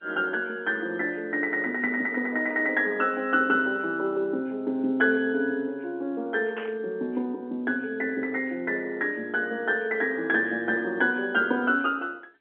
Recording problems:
phone line; 220 Hz to 3.3 kHz, G.711
static burst; at 6.5 s; peak -8 dB vs average level

